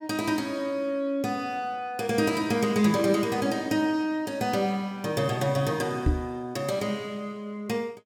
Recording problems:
knock on the microphone; at 6 s; peak +6 dB vs average level

